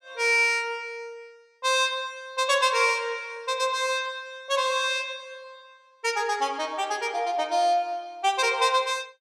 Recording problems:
none

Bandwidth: 14.5 kHz